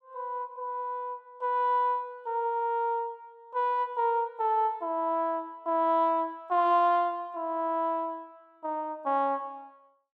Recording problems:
none

